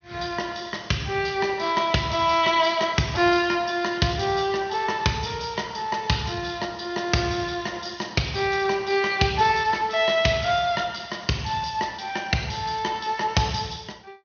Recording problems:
low-pass filter; nothing above 6.3 kHz
lossy compression; Speex, log-spectral distance 5 dB

